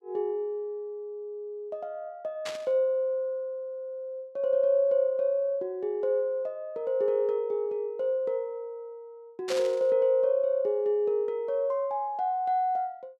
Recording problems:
burst of static; at 2.5 s and at 9.5 s; peak -3 dB vs average level

